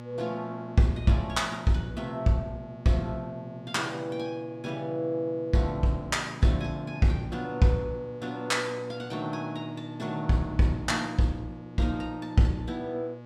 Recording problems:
electrical hum; 60 Hz, harmonics up to 2 kHz, SNR 15 dB

